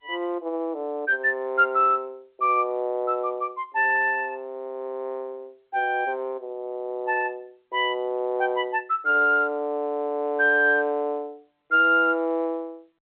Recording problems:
phone line; 300 Hz to 3.1 kHz, G.711

